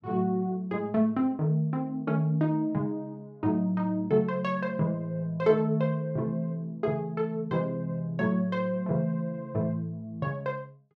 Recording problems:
none

